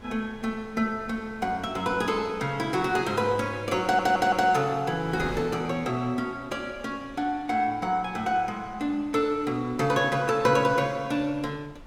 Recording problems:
wind on the microphone; below 820 Hz, SNR 21 dB
audio stuttering; at 4 s

